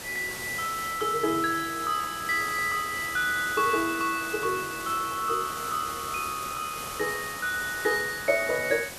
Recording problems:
hiss; slope -2 dB per octave, SNR 9 dB

